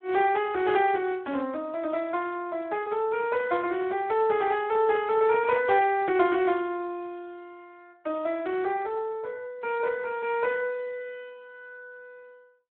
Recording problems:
telephone audio; 110 Hz to 3 kHz, Speex

